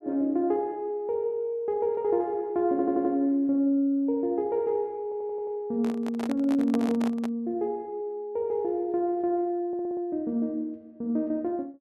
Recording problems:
stutter; at 2.5 s, at 5 s and at 9.5 s
microphone handling noise; from 6 to 7.5 s; peak -3 dB vs average level

